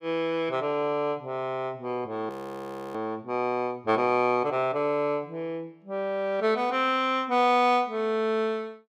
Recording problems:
frozen audio; at 2.5 s for 0.5 s

